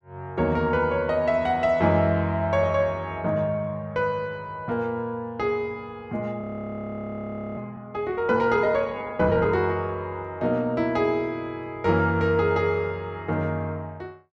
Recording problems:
frozen audio; at 6.5 s for 1 s

